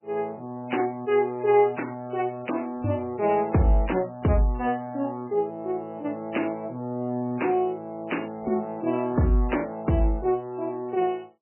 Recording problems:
lossy codec; MP3, log-spectral distance 3 dB, nothing above 3 kHz

